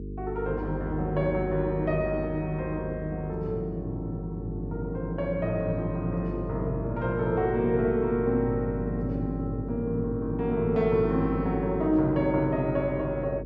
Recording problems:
mains hum; 50 Hz, harmonics up to 450 Hz, SNR 8 dB

